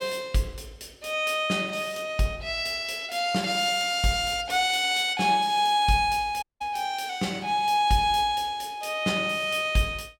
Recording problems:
dropout; at 6.5 s

